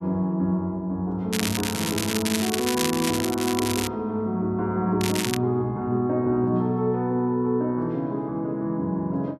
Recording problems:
crackle; from 1.5 to 4 s and at 5 s; loose cable, SNR 4 dB

